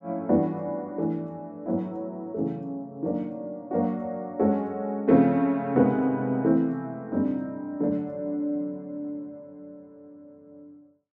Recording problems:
none

